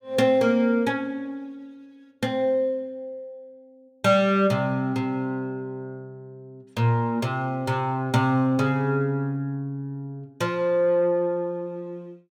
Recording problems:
none

